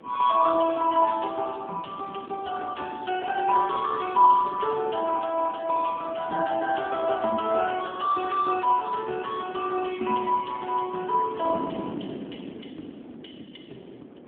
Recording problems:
telephone audio; 260 Hz to 3.3 kHz, AMR-NB
wind on the microphone; below 430 Hz, SNR 17 dB

